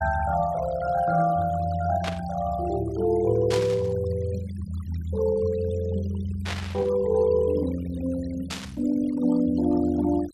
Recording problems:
noise reduction artefacts; signal-to-artefact ratio 18 dB
burst of static; 4 times, first at 2 s; peak -2 dB vs average level

